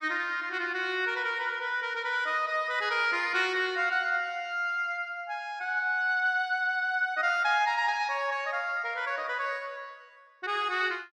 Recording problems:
none

